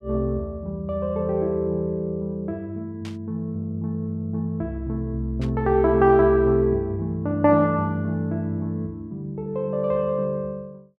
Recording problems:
static burst; at 3 s and at 5.5 s; peak -13 dB vs average level

